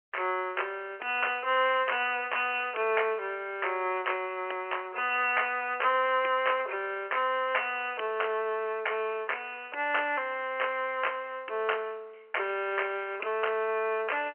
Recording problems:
telephone audio; 320 Hz to 3.1 kHz, G.711

